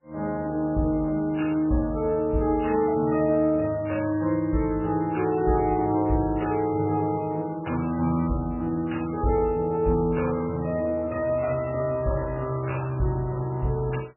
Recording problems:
lossy compression; MP3, log-spectral distance 3 dB, nothing above 2.7 kHz

